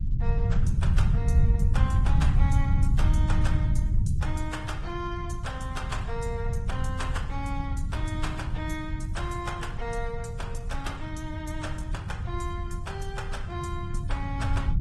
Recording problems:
lossy codec; MP3, then Opus, log-spectral distance 2 dB
rumble; below 110 Hz, SNR -7 dB

